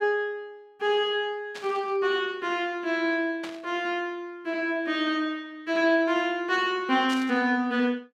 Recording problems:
static burst; at 1.5 s, at 3.5 s and at 7 s; peak -7 dB vs average level

